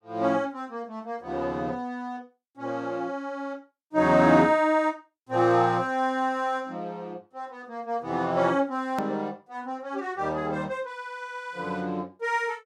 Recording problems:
edit click; at 9 s

